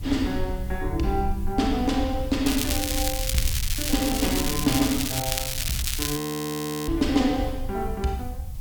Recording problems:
hiss; SNR 22 dB
low-frequency rumble; below 74 Hz, SNR 7 dB
crackle; from 2.5 to 6 s; loose cable, SNR 1 dB
frozen audio; at 6 s for 0.5 s

